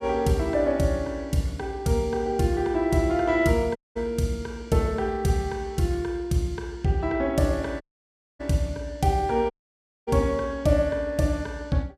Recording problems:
dropout; at 4 s, at 8 s for 0.5 s and at 9.5 s for 0.5 s

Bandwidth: 15 kHz